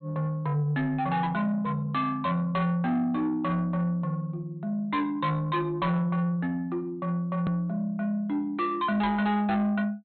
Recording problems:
treble cut off; nothing above 4.1 kHz
distortion; soft clipping, signal-to-distortion ratio 10 dB
edit click; at 7.5 s

